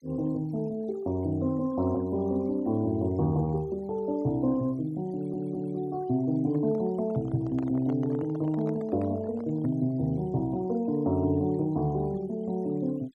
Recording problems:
denoising artefacts; signal-to-artefact ratio 26 dB
stutter; at 5 s
microphone handling noise; from 6.5 to 10 s; peak -9 dB vs average level

